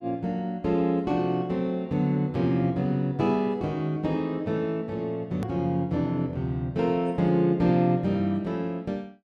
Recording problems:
edit click; at 5.5 s

